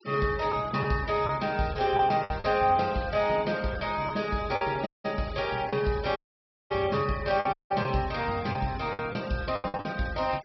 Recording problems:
treble missing; nothing above 5.6 kHz
denoising artefacts; signal-to-artefact ratio 19 dB
packet loss; 7% of the sound replaced, filled with the last packet
audio cutting out; at 5 s, at 6 s for 0.5 s and at 7.5 s

